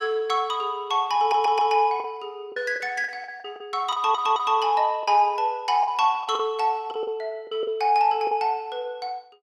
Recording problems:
lost packets; 8% of the sound replaced, filled with the last packet
audio stuttering; at 1 s and at 4 s

